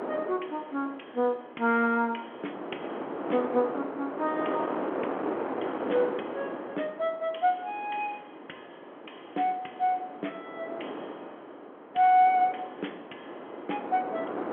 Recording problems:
phone line; 240 Hz to 3.4 kHz, G.711
wind noise; below 900 Hz, SNR 8 dB

